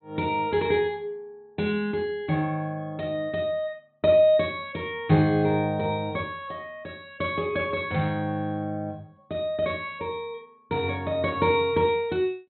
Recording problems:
treble missing; nothing above 4.1 kHz

